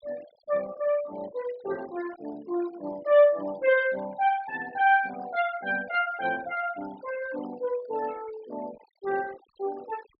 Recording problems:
treble cut off; nothing above 5.5 kHz
denoising artefacts; signal-to-artefact ratio 20 dB

